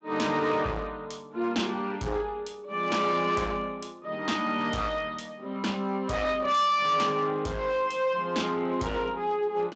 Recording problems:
lossy compression; Speex, log-spectral distance 4 dB, nothing above 7.6 kHz
distortion; hard clipping, signal-to-distortion ratio 10 dB

